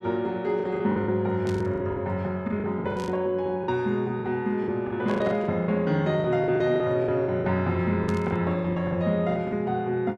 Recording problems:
packet loss; 13% of the sound replaced, filled with the last packet
burst of static; 4 times, first at 1.5 s; peak -11 dB vs average level

